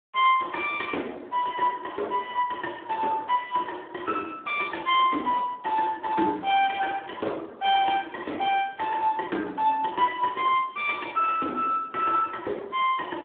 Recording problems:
telephone audio; 240 Hz to 3 kHz, Speex

